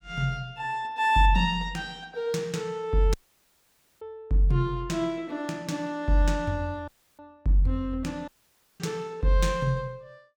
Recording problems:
dropout; at 3 s for 1 s, at 7 s and at 8.5 s for 0.5 s

